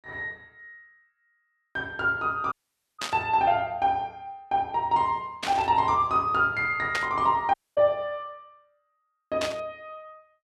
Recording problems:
audio cutting out; at 2.5 s and at 7.5 s
burst of static; 4 times, first at 3 s; peak 0 dB vs average level

